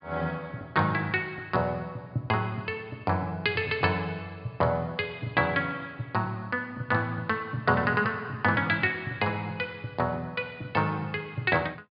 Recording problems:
treble missing; nothing above 5 kHz

